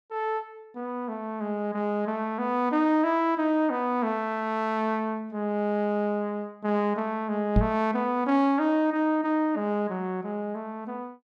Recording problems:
microphone bump; at 7.5 s; peak +7 dB vs average level

